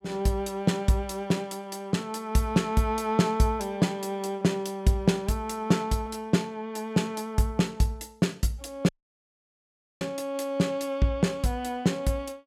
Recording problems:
dropout; at 9 s for 1 s

